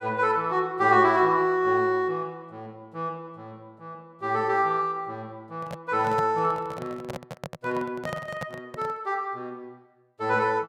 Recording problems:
handling noise; from 5.5 to 9 s; peak -4 dB vs average level

